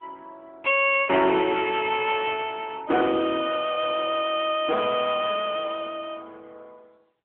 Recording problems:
phone line; 280 Hz to 3 kHz, AMR-NB
distorted audio; hard clipping, signal-to-distortion ratio 11 dB

